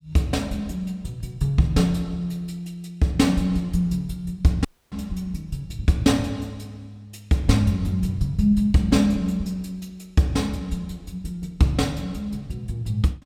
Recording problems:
audio cutting out; at 4.5 s

